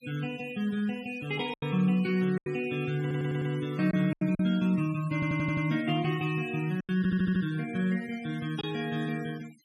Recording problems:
noise reduction artefacts; signal-to-artefact ratio 20 dB
lost packets; 5% of the sound replaced, filled with silence
stutter; at 3 s, at 5 s and at 7 s

